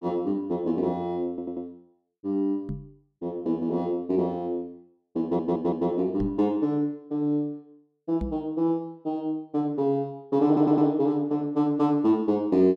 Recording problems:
audio stuttering; at 1.5 s, at 5 s and at 10 s
microphone thump; at 2.5 s, at 6 s and at 8 s; peak -2 dB vs average level

